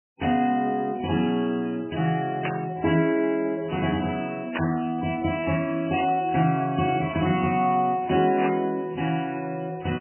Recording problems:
lossy codec; MP3, log-spectral distance 5 dB, nothing above 2.7 kHz
static burst; 4 times, first at 2.5 s; peak +1 dB vs average level

